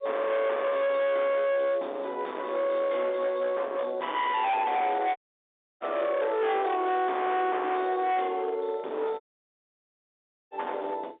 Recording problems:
phone line; 990 Hz to 2 kHz, G.711
distorted audio; hard clipping, uneven, signal-to-distortion ratio 8 dB
dropout; at 5 s for 0.5 s and at 9 s for 1.5 s

